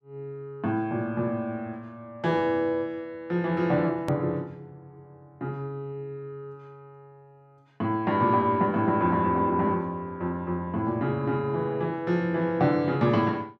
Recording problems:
edit click; at 4 s

